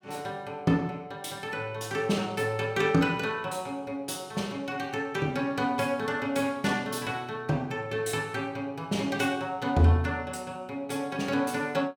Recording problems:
none

